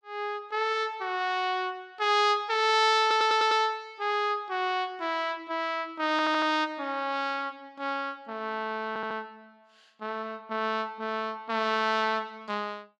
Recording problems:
audio stuttering; at 3 s, at 6 s and at 9 s

